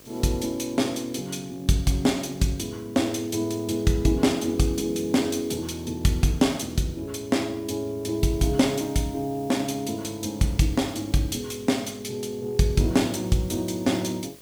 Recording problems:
hum; 50 Hz, harmonics up to 3.5 kHz, SNR 28 dB
hiss; slope +2 dB per octave, SNR 25 dB

